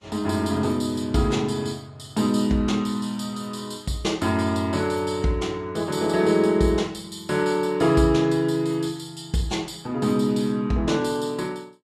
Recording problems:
codec artefacts; Vorbis, log-spectral distance 3 dB, nothing above 13.5 kHz

